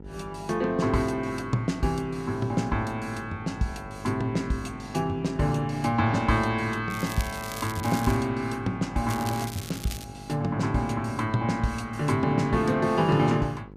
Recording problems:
hum; 50 Hz, harmonics up to 950 Hz, SNR 17 dB
crackle; from 7 to 8 s and at 9 s; loose cable, SNR 13 dB

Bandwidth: 14.5 kHz